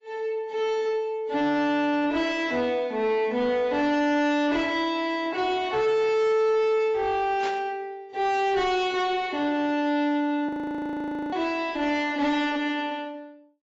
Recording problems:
lossy codec; AAC, log-spectral distance 2 dB, nothing above 7.3 kHz
distorted audio; soft clipping, signal-to-distortion ratio 9 dB
static burst; at 7.5 s; peak -7 dB vs average level
audio freezing; at 10 s for 1 s

